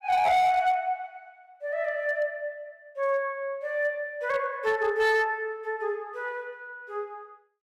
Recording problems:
distorted audio; hard clipping, signal-to-distortion ratio 11 dB

